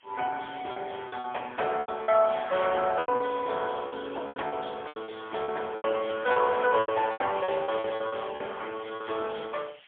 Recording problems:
telephone audio; 320 Hz to 3.4 kHz, AMR-NB, then MP3
hiss; SNR 26 dB
lost packets; 13% of the sound replaced, filled with repeated pitch periods

